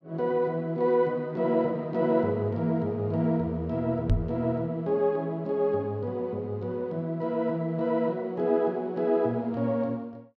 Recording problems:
microphone bump; at 4 s; peak +6 dB vs average level

